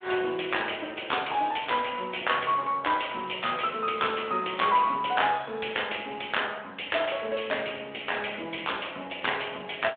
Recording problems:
telephone audio; 280 Hz to 3.6 kHz, Speex

